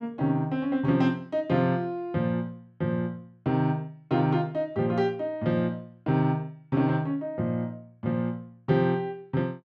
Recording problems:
none

